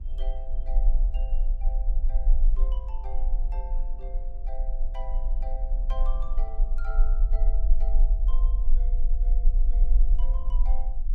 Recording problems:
rumble; below 36 Hz, strongest tone 22 Hz, SNR -18 dB
wind noise; below 120 Hz, SNR 7 dB

